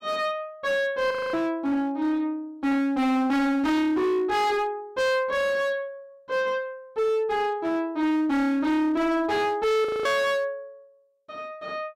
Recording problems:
distorted audio; hard clipping, signal-to-distortion ratio 6 dB
frozen audio; at 1 s and at 10 s

